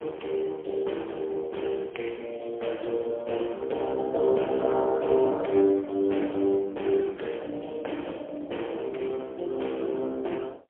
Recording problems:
telephone audio; 260 Hz to 3.3 kHz, AMR-NB, then MP3

